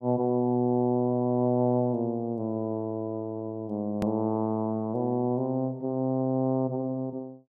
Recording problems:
click at an edit; at 4 s

